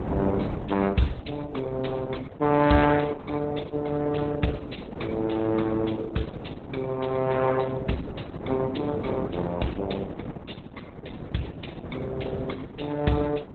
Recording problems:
lossy codec; Opus, then Opus, log-spectral distance 5 dB, nothing above 4 kHz
wind noise; below 460 Hz, SNR 8 dB

